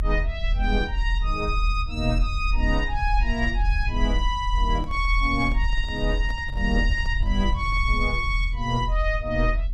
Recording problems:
rumble; below 46 Hz, strongest tone 40 Hz, SNR 1 dB
microphone handling noise; from 4.5 to 8 s; peak -11 dB vs average level

